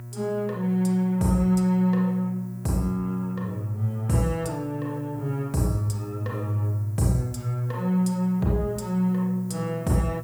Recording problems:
hum; 60 Hz, harmonics up to 720 Hz, SNR 14 dB
hiss; SNR 29 dB

